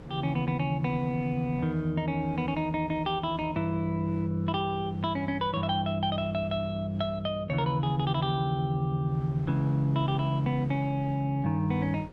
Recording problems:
electrical hum; 60 Hz, harmonics up to 540 Hz, SNR 22 dB
wind on the microphone; below 610 Hz, SNR 23 dB

